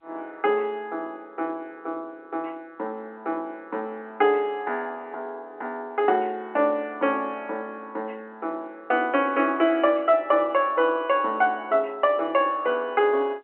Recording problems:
phone line; 280 Hz to 3.3 kHz, G.711

